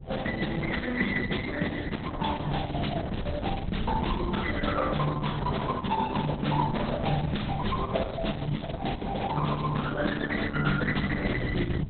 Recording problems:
lossy codec; Opus, log-spectral distance 7 dB, nothing above 4 kHz
wind noise; below 120 Hz, SNR 10 dB

